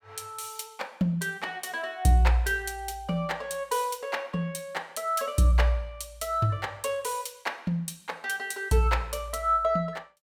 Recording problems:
none

